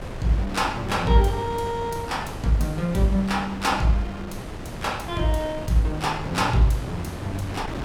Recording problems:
wind noise; below 680 Hz, SNR 10 dB

